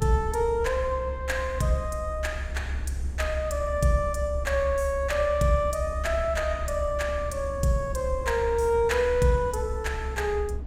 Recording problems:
low-frequency rumble; below 70 Hz, strongest tone 66 Hz, SNR 7 dB

